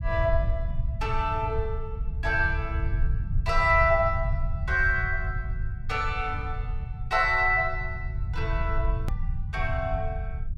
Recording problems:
rumble; below 88 Hz, SNR 5 dB
click at an edit; at 9 s

